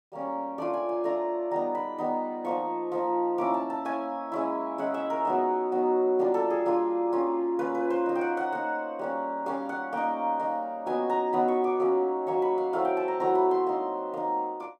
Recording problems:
none

